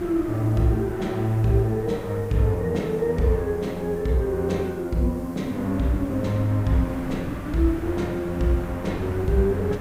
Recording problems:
background hiss; SNR 29 dB
wind noise; below 420 Hz, SNR 13 dB

